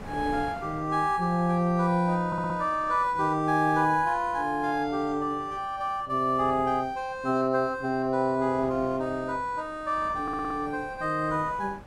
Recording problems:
wind on the microphone; below 800 Hz, SNR 20 dB
audio stuttering; at 2.5 s and at 10 s

